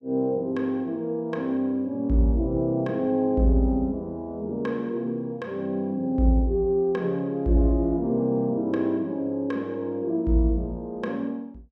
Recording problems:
none

